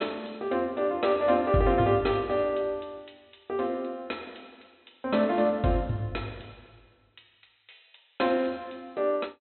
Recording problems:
treble cut off; nothing above 4.1 kHz

